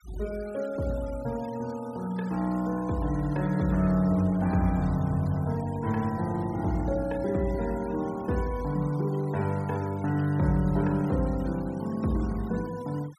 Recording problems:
noise reduction artefacts; signal-to-artefact ratio 22 dB

